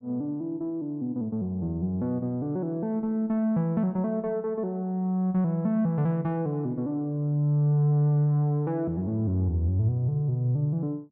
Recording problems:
none

